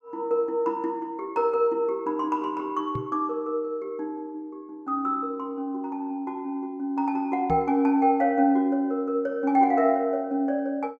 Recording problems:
microphone thump; at 3 s and at 7.5 s; peak -2 dB vs average level

